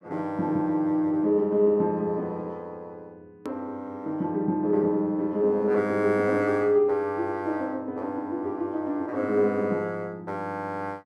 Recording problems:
hard cut with a click; at 3.5 s

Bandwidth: 12.5 kHz